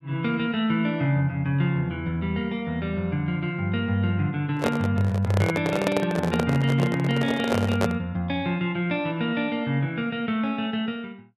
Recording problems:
microphone handling noise; from 4.5 to 8 s; peak +4 dB vs average level

